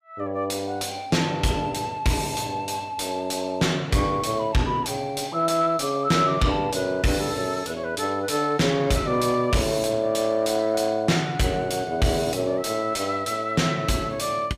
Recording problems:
distorted audio; soft clipping, signal-to-distortion ratio 8 dB

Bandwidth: 15 kHz